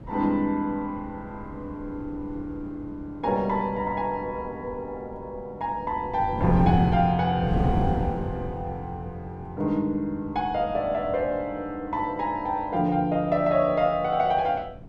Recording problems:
wind on the microphone; below 230 Hz, SNR 8 dB

